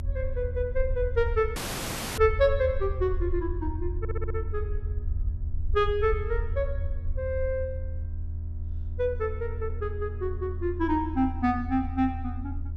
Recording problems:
hum; 60 Hz, harmonics up to 960 Hz, SNR 21 dB
rumble; below 80 Hz, SNR 4 dB
dropout; at 1.5 s for 0.5 s
audio stuttering; at 4 s

